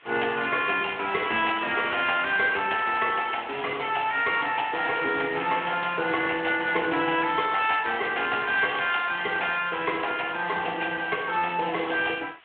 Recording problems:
phone line; 300 Hz to 3.4 kHz, Speex
hiss; SNR 27 dB

